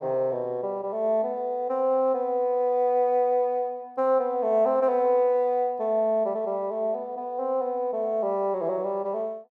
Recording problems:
none

